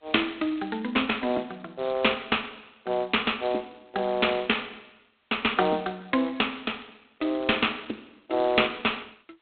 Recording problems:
telephone audio; 260 Hz to 3.8 kHz, G.726

